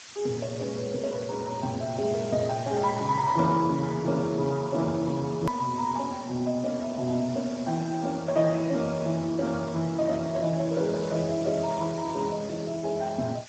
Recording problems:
lossy compression; Speex, log-spectral distance 8 dB, nothing above 13.1 kHz
hiss; slope +2 dB per octave, SNR 17 dB
edit click; at 5.5 s

